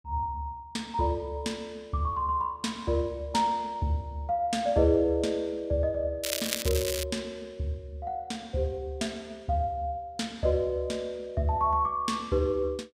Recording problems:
crackle; at 6 s; loose cable, SNR 3 dB

